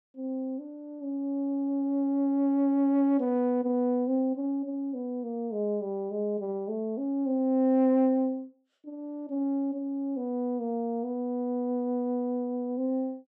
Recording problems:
none

